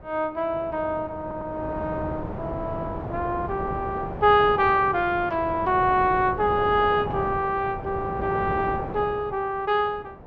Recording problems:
wind on the microphone; below 650 Hz, SNR 10 dB
stutter; at 1 s

